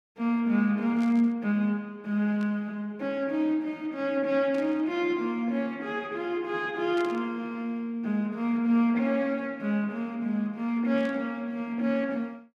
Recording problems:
static burst; 5 times, first at 1 s; peak -13 dB vs average level

